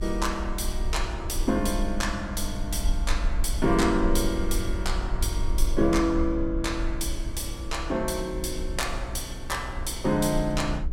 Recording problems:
hum; 60 Hz, harmonics up to 420 Hz, SNR 13 dB
rumble; below 52 Hz, SNR 5 dB

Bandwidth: 16.5 kHz